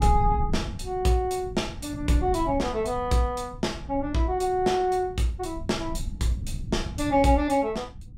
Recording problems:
rumble; below 120 Hz, SNR 10 dB

